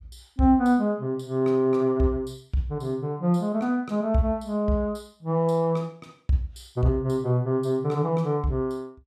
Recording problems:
none

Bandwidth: 14.5 kHz